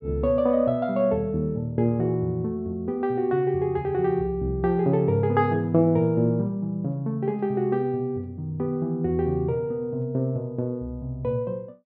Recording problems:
treble missing; nothing above 5.5 kHz

